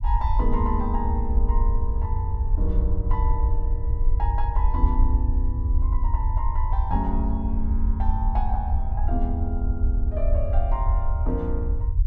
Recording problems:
low-frequency rumble; below 66 Hz, SNR -7 dB

